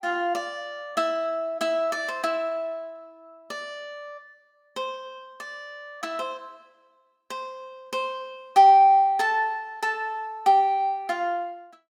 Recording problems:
none

